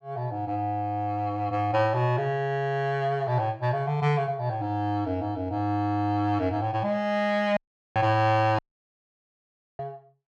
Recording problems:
dropout; at 7.5 s and at 8.5 s for 1 s

